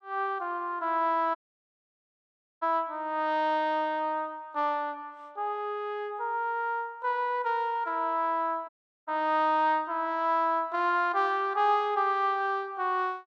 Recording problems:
audio cutting out; at 1.5 s for 1.5 s and at 8.5 s

